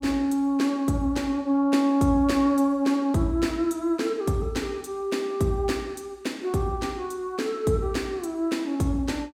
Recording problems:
none

